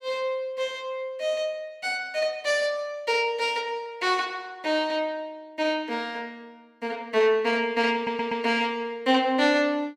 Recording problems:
audio stuttering; at 8 s

